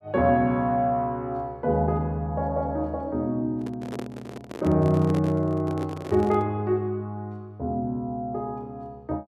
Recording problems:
microphone handling noise; from 3.5 to 6.5 s; peak -5 dB vs average level

